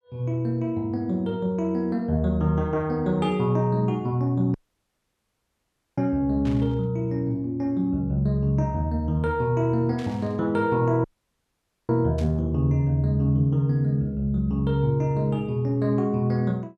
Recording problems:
audio cutting out; at 4.5 s for 1.5 s and at 11 s for 1 s
burst of static; at 6.5 s, at 10 s and at 12 s; peak -14 dB vs average level

